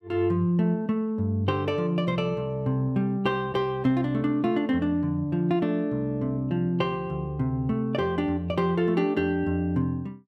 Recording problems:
none

